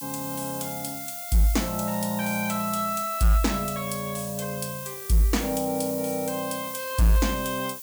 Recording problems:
distorted audio; hard clipping, signal-to-distortion ratio 12 dB
background hiss; slope +5 dB per octave, SNR 8 dB

